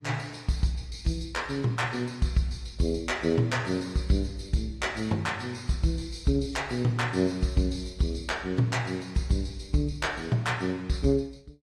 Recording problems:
lossy codec; AAC, log-spectral distance 2 dB

